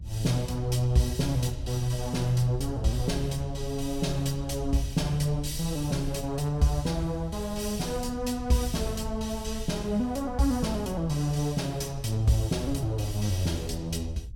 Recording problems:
low-frequency rumble; below 80 Hz, SNR 11 dB

